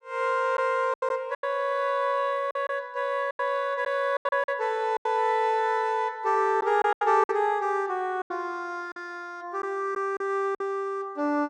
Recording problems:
lost packets; 8% of the sound replaced, filled with silence

